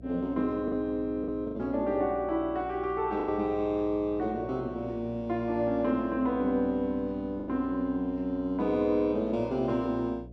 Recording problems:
hum; 60 Hz, harmonics up to 720 Hz, SNR 18 dB
packet loss; 3% of the sound replaced, filled with the last packet

